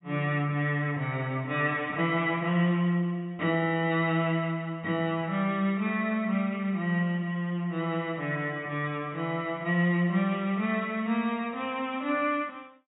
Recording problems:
treble missing; nothing above 4 kHz

